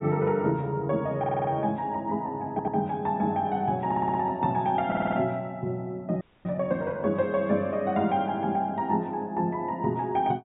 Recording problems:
low-pass filter; nothing above 4 kHz
stutter; 4 times, first at 1 s
audio freezing; at 6 s

